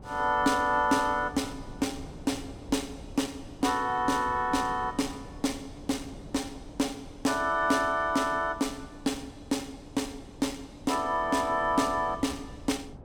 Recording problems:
wind noise; below 370 Hz, SNR 17 dB

